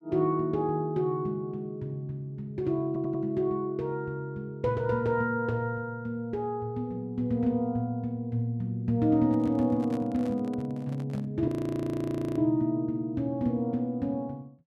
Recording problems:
audio stuttering; at 3 s
handling noise; from 9.5 to 11 s; peak -9 dB vs average level
audio freezing; at 11 s for 1 s

